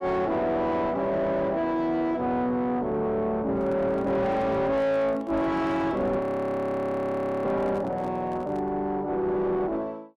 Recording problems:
distorted audio; soft clipping, signal-to-distortion ratio 6 dB
handling noise; from 3.5 to 8.5 s; peak -7 dB vs average level
frozen audio; at 6 s for 1.5 s

